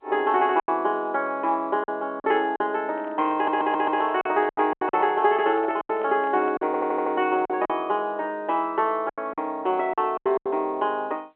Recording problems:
telephone audio; 260 Hz to 3.3 kHz, G.711
lost packets; 9% of the sound replaced, filled with silence
microphone handling noise; from 3 to 6.5 s; peak -10 dB vs average level
stutter; at 3.5 s and at 6.5 s

